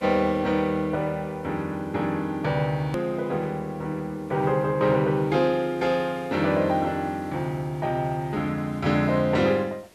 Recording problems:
background hiss; slope -4 dB per octave, SNR 28 dB
edit click; at 3 s

